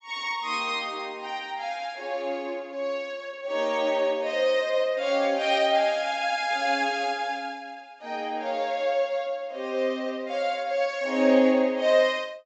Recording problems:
low-pass filter; nothing above 8 kHz

